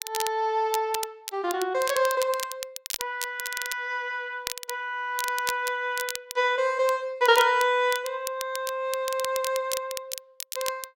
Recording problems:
crackle; vinyl, SNR 9 dB

